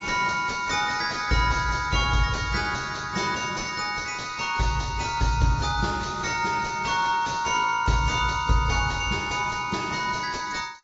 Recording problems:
lossy compression; AAC, log-spectral distance 8 dB, nothing above 6.9 kHz
distortion; soft clipping, signal-to-distortion ratio 10 dB

